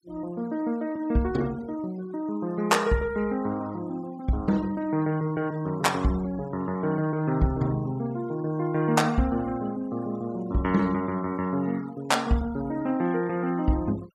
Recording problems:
noise reduction artefacts; signal-to-artefact ratio 22 dB

